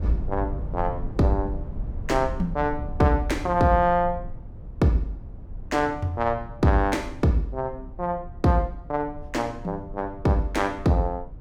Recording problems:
low-frequency rumble; below 90 Hz, SNR 12 dB

